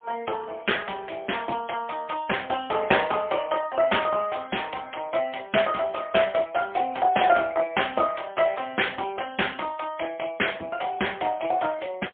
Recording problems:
phone line; 260 Hz to 3.4 kHz, AMR-NB, then MP3

